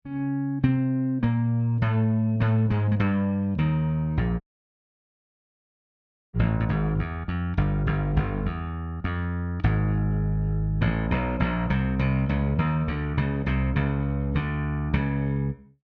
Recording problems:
audio cutting out; at 4.5 s for 2 s

